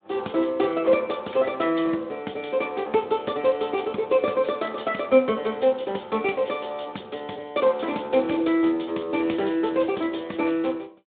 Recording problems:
telephone audio; 240 Hz to 3.6 kHz, Speex

